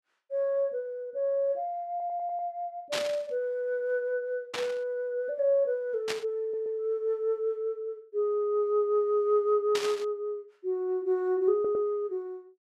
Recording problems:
stutter; at 2 s, at 6.5 s and at 12 s
static burst; 4 times, first at 3 s; peak +1 dB vs average level

